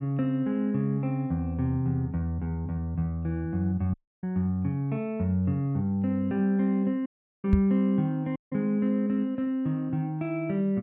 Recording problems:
dropout; at 4 s, at 7 s and at 8.5 s
microphone thump; at 7.5 s; peak +8 dB vs average level

